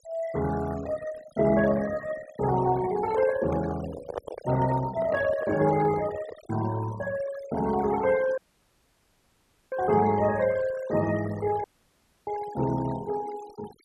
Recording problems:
noise reduction artefacts; signal-to-artefact ratio 15 dB
handling noise; from 3 to 6.5 s; peak -1 dB vs average level
audio cutting out; at 8.5 s for 1.5 s and at 12 s for 0.5 s

